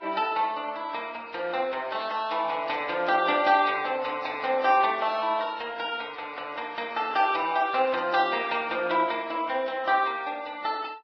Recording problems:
lossy compression; Vorbis, then AAC, log-spectral distance 3 dB, nothing above 5.2 kHz

